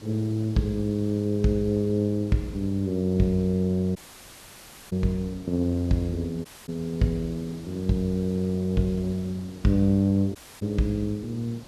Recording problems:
background hiss; SNR 20 dB
audio cutting out; at 4 s for 1 s, at 6.5 s and at 10 s

